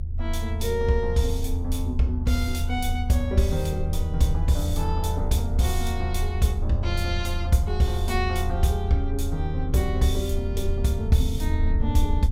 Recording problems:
rumble; below 80 Hz, strongest tone 26 Hz, SNR 2 dB

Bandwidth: 16 kHz